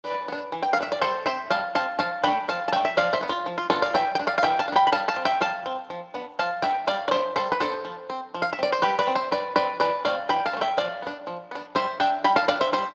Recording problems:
codec artefacts; Speex, log-spectral distance 4 dB

